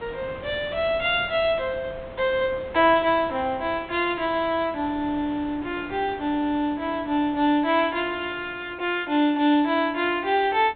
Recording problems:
treble cut off; nothing above 4 kHz
wind on the microphone; below 1.1 kHz, SNR 19 dB

